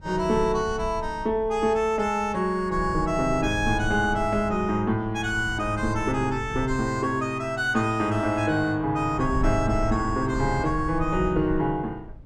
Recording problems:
wind on the microphone; below 82 Hz, SNR 12 dB

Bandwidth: 16.5 kHz